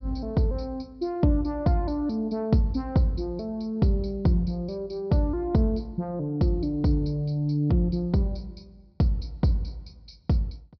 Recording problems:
treble missing; nothing above 5.5 kHz

